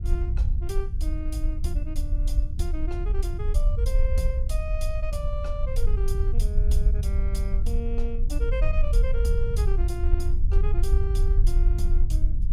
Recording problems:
low-frequency rumble; below 56 Hz, SNR -9 dB

